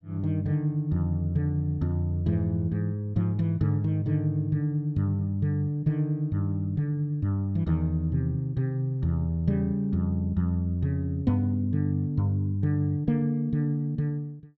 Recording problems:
none

